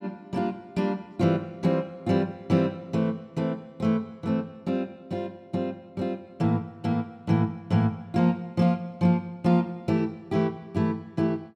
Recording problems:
none

